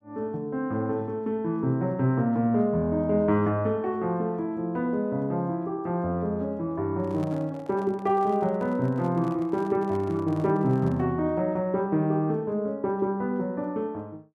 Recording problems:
microphone handling noise; from 7 to 11 s; peak -12 dB vs average level

